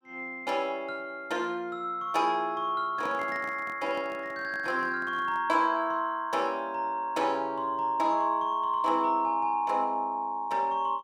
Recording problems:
handling noise; from 3 to 5.5 s; peak -11 dB vs average level

